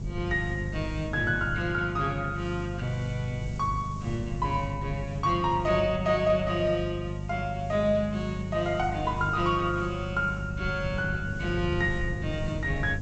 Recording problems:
low-pass filter; nothing above 8 kHz
electrical hum; 50 Hz, harmonics up to 450 Hz, SNR 7 dB
hiss; SNR 27 dB
wind noise; below 150 Hz, SNR 11 dB

